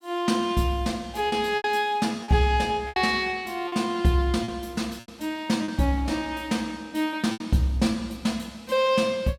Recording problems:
lost packets; 6% of the sound replaced, filled with repeated pitch periods

